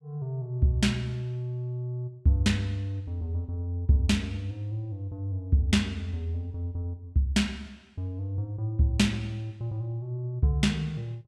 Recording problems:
none

